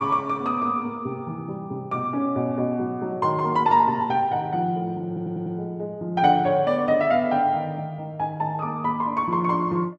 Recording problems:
audio stuttering; at 5 s

